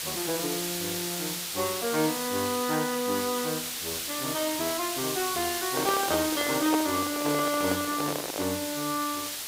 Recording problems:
background hiss; slope +2 dB per octave, SNR 2 dB
microphone handling noise; from 5.5 to 8.5 s; peak +4 dB vs average level

